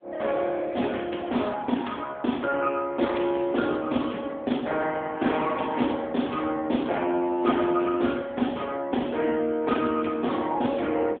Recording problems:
phone line; 190 Hz to 3.5 kHz, AMR-NB

